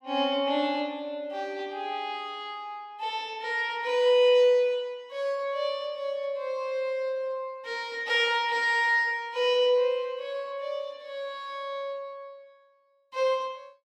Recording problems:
none

